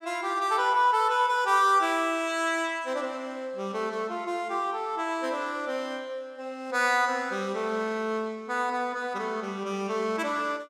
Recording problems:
none

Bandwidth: 17 kHz